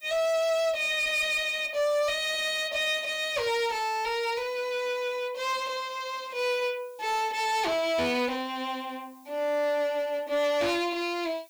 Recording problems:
distorted audio; hard clipping, uneven, signal-to-distortion ratio 10 dB
background hiss; SNR 29 dB

